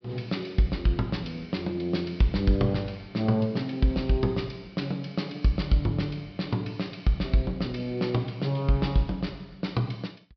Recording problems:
treble cut off; nothing above 5.5 kHz

